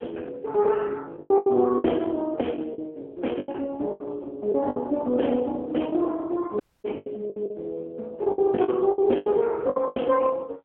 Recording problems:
telephone audio; 260 Hz to 3.3 kHz, AMR-NB
lost packets; 12% of the sound replaced, filled with the last packet
dropout; at 6.5 s

